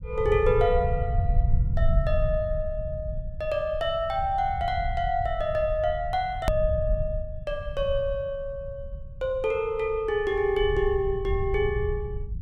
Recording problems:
rumble; below 92 Hz, SNR 5 dB
edit click; at 6.5 s

